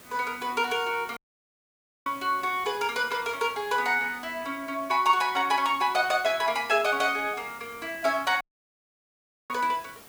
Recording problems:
hiss; slope -3 dB per octave, SNR 21 dB
audio cutting out; at 1 s for 1 s and at 8.5 s for 1 s

